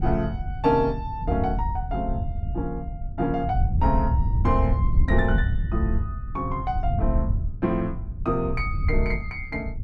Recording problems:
wind on the microphone; below 90 Hz, SNR 0 dB

